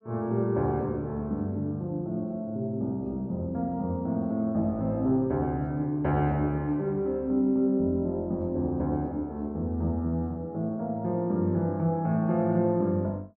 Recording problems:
none

